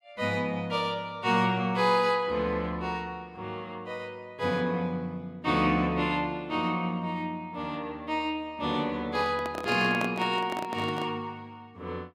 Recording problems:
microphone handling noise; from 9 to 11 s; peak -1 dB vs average level

